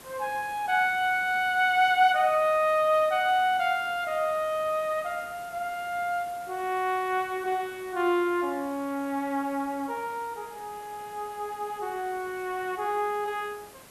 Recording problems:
background hiss; slope -4 dB per octave, SNR 21 dB

